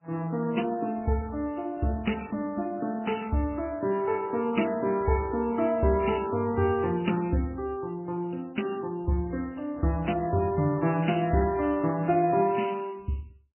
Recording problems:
lossy compression; MP3, then MP3, log-spectral distance 4 dB, nothing above 3 kHz

